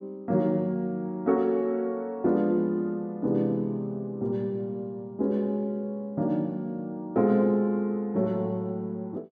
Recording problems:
none

